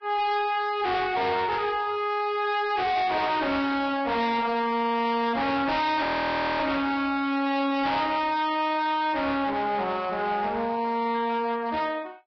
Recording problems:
lossy compression; Vorbis, log-spectral distance 3 dB, nothing above 5.3 kHz
distortion; hard clipping, signal-to-distortion ratio 7 dB
burst of static; at 1.5 s; peak -10 dB vs average level
frozen audio; at 6 s for 0.5 s

